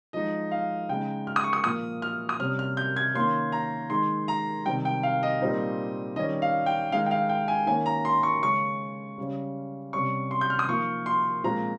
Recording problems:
none

